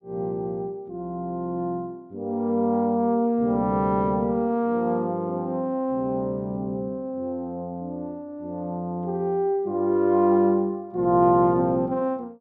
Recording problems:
none

